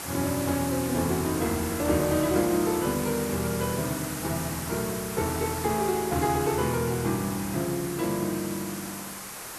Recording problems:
background hiss; SNR 7 dB

